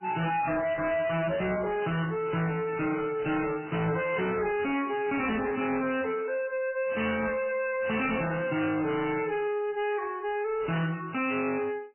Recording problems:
lossy codec; MP3, then AAC, log-spectral distance 5 dB, nothing above 2.7 kHz
distortion; soft clipping, signal-to-distortion ratio 6 dB

